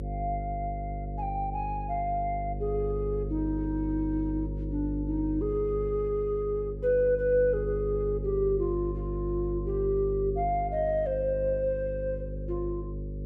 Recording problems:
hum; 50 Hz, harmonics up to 550 Hz, SNR 6 dB

